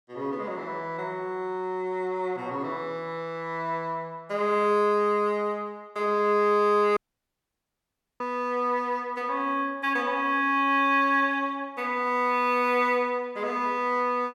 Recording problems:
dropout; at 7 s for 1 s

